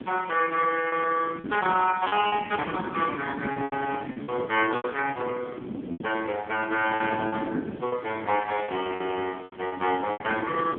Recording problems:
telephone audio; 220 Hz to 3.3 kHz, AMR-NB
hiss; SNR 27 dB
wind noise; below 370 Hz, SNR 9 dB
lost packets; 8% of the sound replaced, filled with repeated pitch periods

